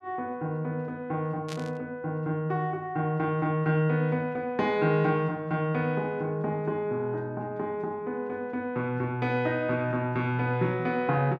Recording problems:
burst of static; at 1.5 s; peak -7 dB vs average level

